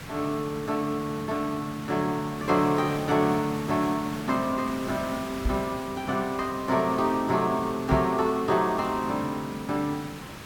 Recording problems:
hiss; SNR 12 dB
microphone bump; at 5.5 s and at 8 s; peak +4 dB vs average level

